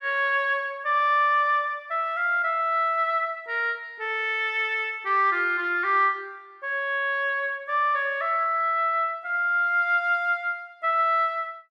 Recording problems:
none

